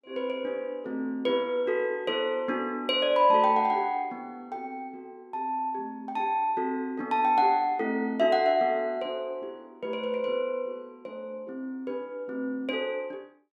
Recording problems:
none

